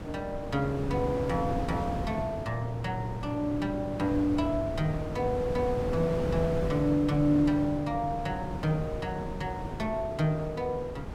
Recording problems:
wind on the microphone; below 430 Hz, SNR 7 dB

